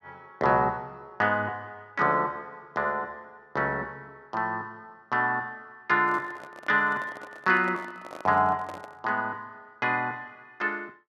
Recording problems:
handling noise; from 6 to 9 s; peak -9 dB vs average level

